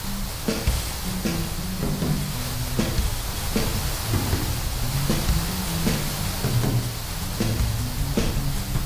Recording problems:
lossy compression; AAC, log-spectral distance 9 dB, nothing above 14.7 kHz
background hiss; slope -1 dB per octave, SNR 2 dB
low-frequency rumble; below 110 Hz, SNR 6 dB

